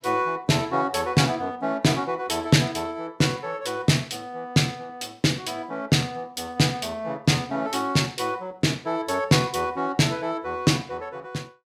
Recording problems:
none

